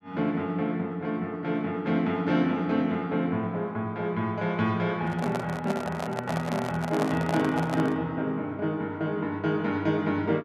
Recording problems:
microphone handling noise; from 5 to 8 s; peak +1 dB vs average level

